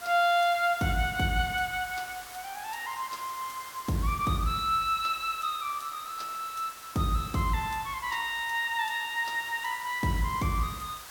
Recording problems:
background hiss; SNR 14 dB

